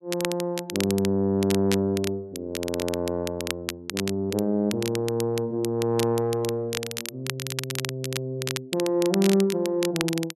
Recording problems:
crackle; vinyl, SNR 8 dB

